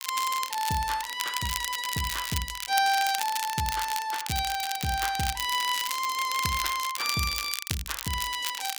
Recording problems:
crackling; vinyl, SNR 5 dB

